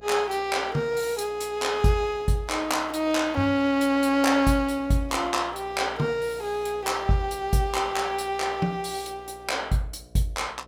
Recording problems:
electrical hum; 60 Hz, harmonics up to 720 Hz, SNR 25 dB

